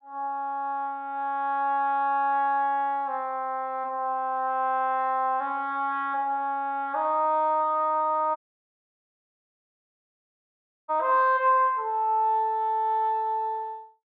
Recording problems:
audio cutting out; at 8.5 s for 2.5 s

